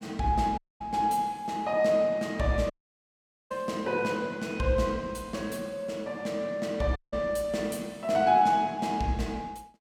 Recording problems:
audio cutting out; at 0.5 s, at 2.5 s for 1 s and at 7 s

